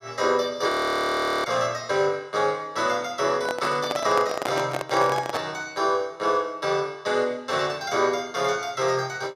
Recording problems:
audio freezing; at 0.5 s for 1 s
microphone handling noise; from 3.5 to 5.5 s; peak +1 dB vs average level

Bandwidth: 15 kHz